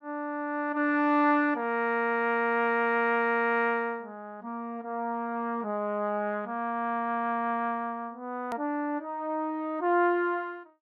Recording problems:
hard cut with a click; at 8.5 s

